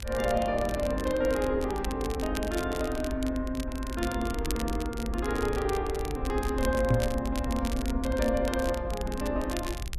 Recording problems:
rumble; below 70 Hz, SNR 7 dB
crackling; vinyl, SNR 12 dB
microphone bump; at 7 s; peak +8 dB vs average level

